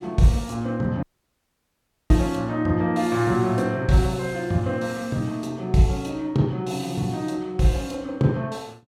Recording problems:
dropout; at 1 s for 1 s

